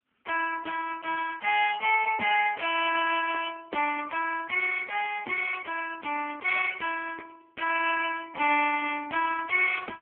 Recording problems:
telephone audio; 260 Hz to 3 kHz, AMR-NB

